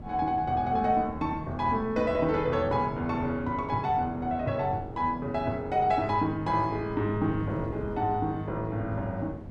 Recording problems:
wind on the microphone; below 300 Hz, SNR 14 dB

